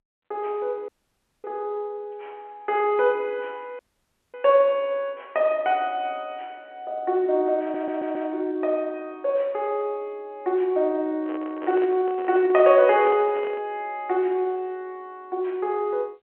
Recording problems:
phone line; 260 Hz to 3.8 kHz, G.711
dropout; at 1 s for 0.5 s and at 4 s for 0.5 s
stutter; at 7.5 s
handling noise; from 11 to 14 s; peak -7 dB vs average level

